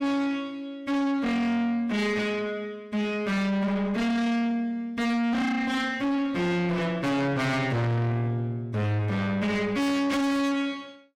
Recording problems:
distortion; soft clipping, signal-to-distortion ratio 6 dB

